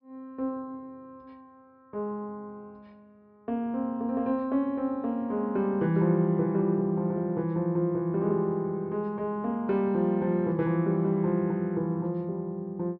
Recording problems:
low-pass filter; nothing above 5.5 kHz

